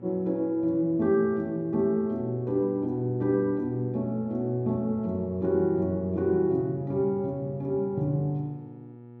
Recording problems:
hum; 60 Hz, harmonics up to 960 Hz, SNR 19 dB

